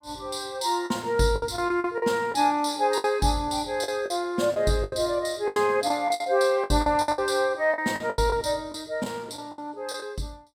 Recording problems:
packet loss; 12% of the sound replaced, filled with the last packet

